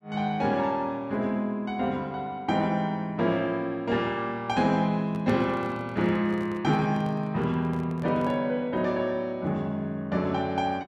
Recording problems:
handling noise; from 5 to 8.5 s; peak -6 dB vs average level

